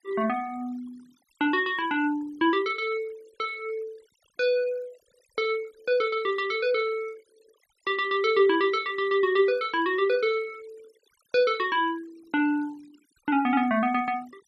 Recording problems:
denoising artefacts; signal-to-artefact ratio 24 dB

